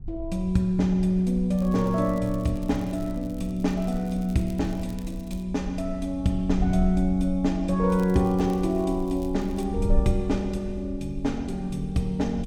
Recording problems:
wind on the microphone; below 64 Hz, SNR 11 dB
crackle; from 1.5 to 5.5 s and from 8 to 9.5 s; loose cable, SNR 27 dB

